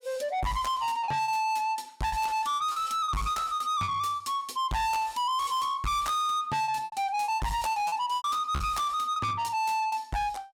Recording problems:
distorted audio; soft clipping, signal-to-distortion ratio 7 dB
packet loss; 9% of the sound replaced, filled with repeated pitch periods

